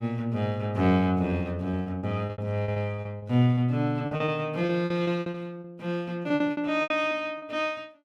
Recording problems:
packet loss; 14% of the sound replaced, filled with repeated pitch periods

